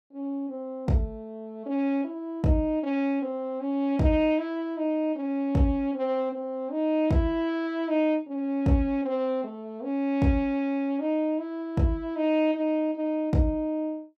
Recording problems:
none

